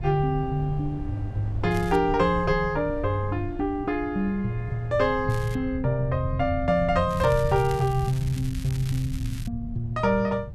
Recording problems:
rumble; below 130 Hz, SNR 11 dB
wind noise; below 100 Hz, SNR 13 dB
crackling; at 1.5 s, at 5.5 s and from 7 to 9.5 s; loose cable, SNR 19 dB

